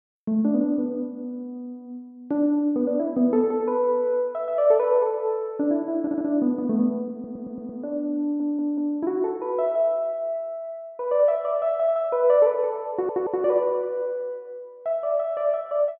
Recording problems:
audio stuttering; 4 times, first at 6 s

